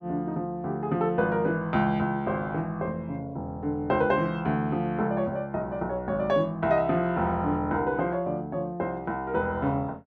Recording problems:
none

